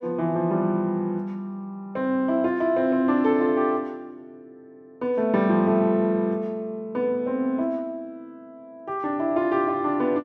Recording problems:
none

